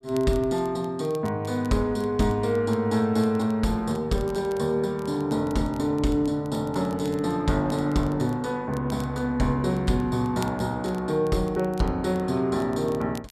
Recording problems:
crackle; vinyl, SNR 26 dB

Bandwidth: 13.5 kHz